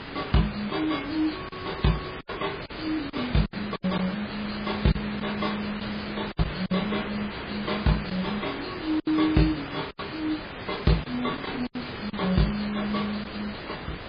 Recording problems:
codec artefacts; MP3, log-spectral distance 11 dB, nothing above 4.8 kHz
hum; 60 Hz, harmonics up to 720 Hz, SNR 27 dB
hiss; SNR 7 dB
lost packets; 6% of the sound replaced, filled with silence

